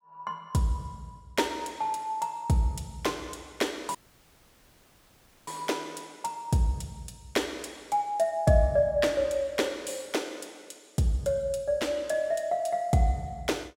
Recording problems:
audio cutting out; at 4 s for 1.5 s

